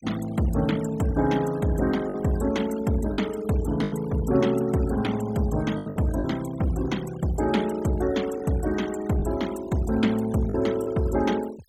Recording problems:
noise reduction artefacts; signal-to-artefact ratio 18 dB
lost packets; 4% of the sound replaced, filled with the last packet

